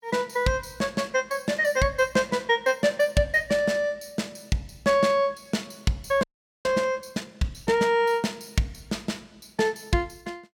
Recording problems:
frozen audio; at 6 s

